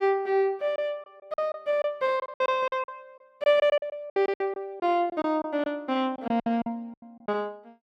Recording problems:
lost packets; 13% of the sound replaced, filled with silence

